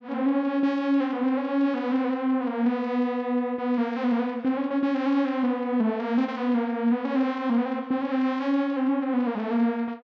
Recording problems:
none

